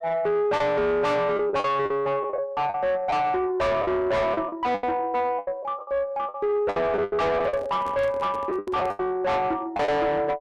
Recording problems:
distortion; soft clipping, signal-to-distortion ratio 5 dB
packet loss; 11% of the sound replaced, filled with the last packet
handling noise; from 7.5 to 9 s; peak -8 dB vs average level

